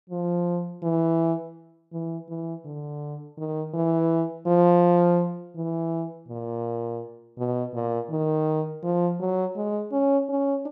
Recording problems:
none

